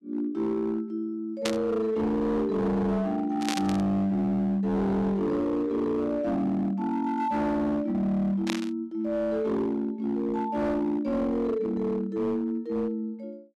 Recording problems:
distortion; hard clipping, signal-to-distortion ratio 11 dB
static burst; at 1.5 s, at 3.5 s and at 8.5 s; peak +1 dB vs average level

